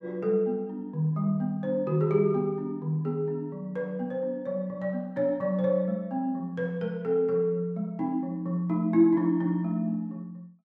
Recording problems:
none

